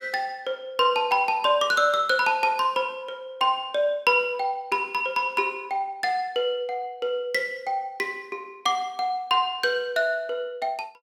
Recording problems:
none

